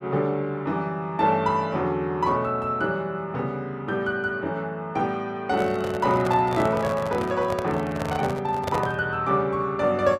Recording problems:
microphone handling noise; from 5.5 to 9 s; peak 0 dB vs average level

